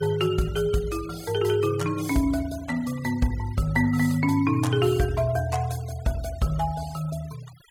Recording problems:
noise reduction artefacts; signal-to-artefact ratio 20 dB

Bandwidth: 18 kHz